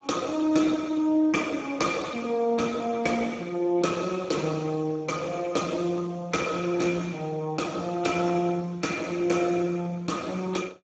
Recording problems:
codec artefacts; Speex, log-spectral distance 4 dB, nothing above 7.3 kHz

